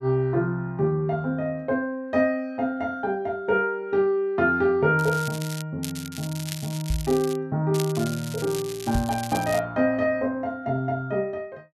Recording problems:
crackle; at 5 s, from 6 to 7.5 s and from 7.5 to 9.5 s; loose cable, SNR 12 dB
knock on the microphone; at 7 s and at 9 s; peak +1 dB vs average level

